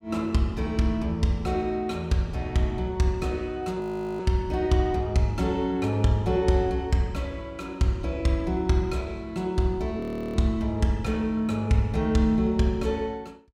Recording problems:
audio freezing; at 4 s and at 10 s

